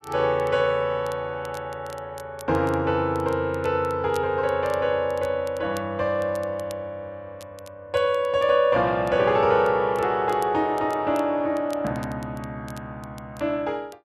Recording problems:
crackle; vinyl, SNR 26 dB

